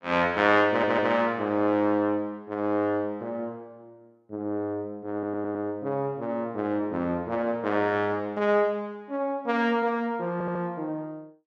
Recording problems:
audio stuttering; at 0.5 s, at 5 s and at 10 s

